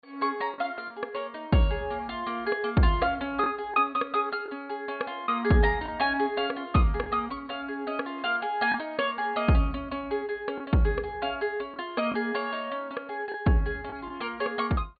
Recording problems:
low-pass filter; nothing above 4.6 kHz
lost packets; 2% of the sound replaced, filled with the last packet

